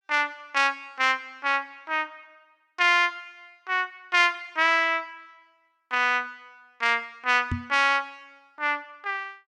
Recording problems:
knock on the microphone; at 7.5 s; peak -1 dB vs average level

